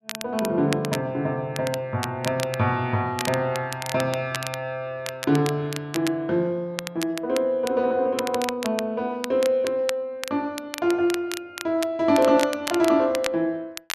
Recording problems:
crackling; vinyl, SNR 11 dB

